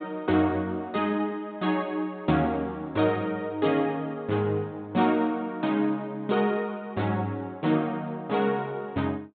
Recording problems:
treble cut off; nothing above 4 kHz

